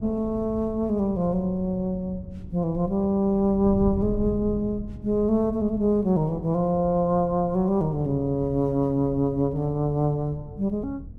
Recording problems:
wind on the microphone; below 150 Hz, SNR 14 dB

